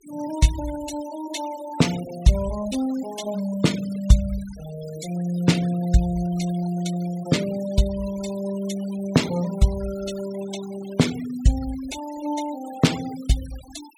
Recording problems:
noise reduction artefacts; signal-to-artefact ratio 16 dB

